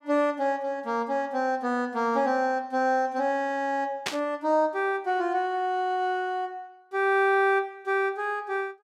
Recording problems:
static burst; at 4 s; peak +2 dB vs average level

